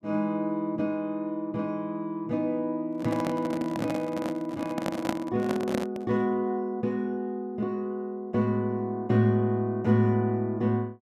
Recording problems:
handling noise; from 3 to 6 s; peak +3 dB vs average level

